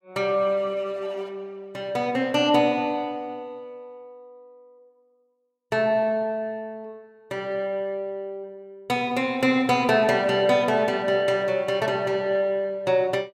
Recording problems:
none

